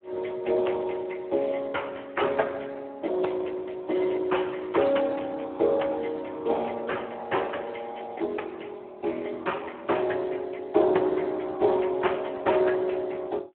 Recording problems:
phone line; 280 Hz to 3.2 kHz, Speex

